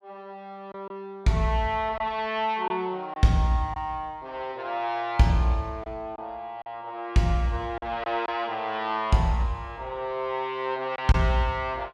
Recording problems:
lost packets; 3% of the sound replaced, filled with silence

